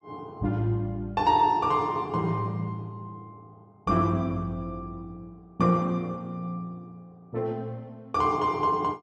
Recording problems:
none

